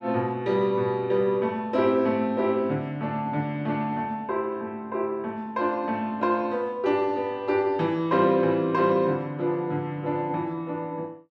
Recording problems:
none

